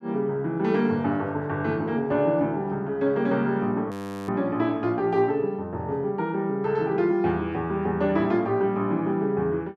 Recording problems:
frozen audio; at 4 s

